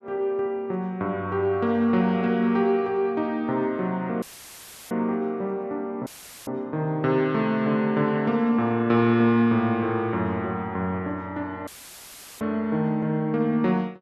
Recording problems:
audio cutting out; at 4 s for 0.5 s, at 6 s and at 12 s for 0.5 s; filled with static

